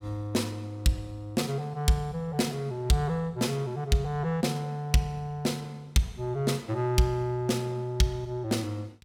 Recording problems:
none

